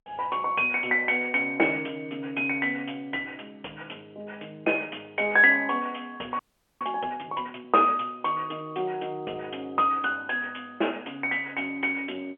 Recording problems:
phone line; 300 Hz to 3.2 kHz, G.711
frozen audio; at 6.5 s

